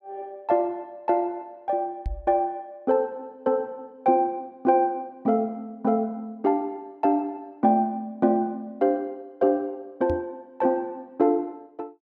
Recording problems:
microphone bump; at 2 s and at 10 s; peak -2 dB vs average level

